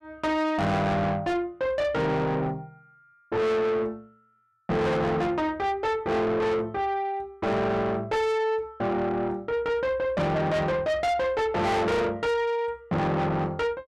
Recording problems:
distorted audio; soft clipping, signal-to-distortion ratio 7 dB

